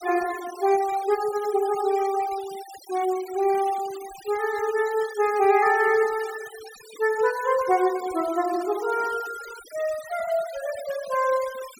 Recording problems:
noise reduction artefacts; signal-to-artefact ratio 17 dB

